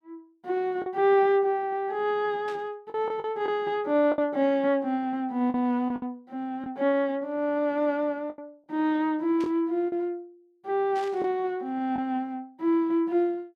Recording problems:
lost packets; 4% of the sound replaced, filled with the last packet
burst of static; at 2.5 s, at 9.5 s and at 11 s; peak -13 dB vs average level

